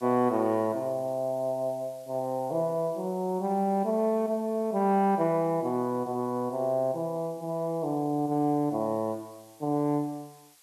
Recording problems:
background hiss; slope +2 dB per octave, SNR 27 dB

